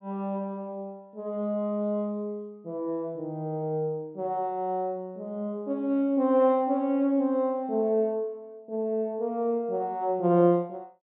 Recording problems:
low-pass filter; nothing above 4 kHz

